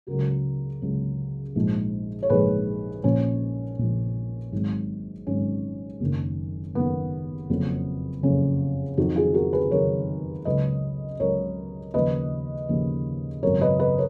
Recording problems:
none

